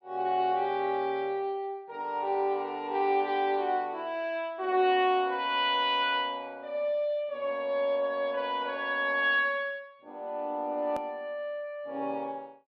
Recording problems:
hard cut with a click; at 11 s

